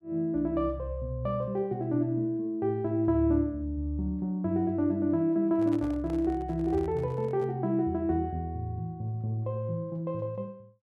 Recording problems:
handling noise; from 5.5 to 7.5 s; peak -12 dB vs average level

